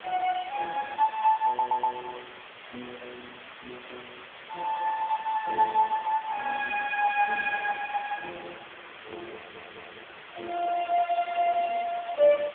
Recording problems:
telephone audio; 320 Hz to 2.5 kHz, AMR-NB
hiss; SNR 17 dB
audio stuttering; at 1.5 s and at 9.5 s

